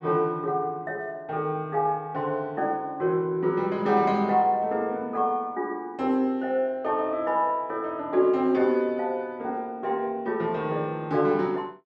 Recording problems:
none

